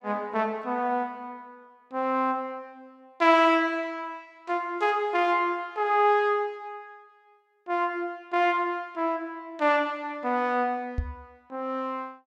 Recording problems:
microphone bump; at 11 s; peak +1 dB vs average level

